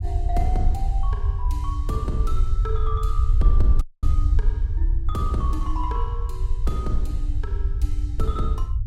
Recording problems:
rumble; below 64 Hz, SNR -6 dB
dropout; at 4 s

